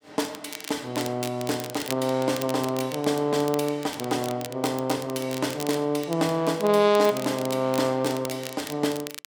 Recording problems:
crackling; vinyl, SNR 13 dB

